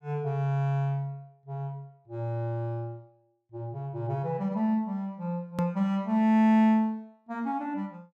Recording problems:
hard cut with a click; at 5.5 s

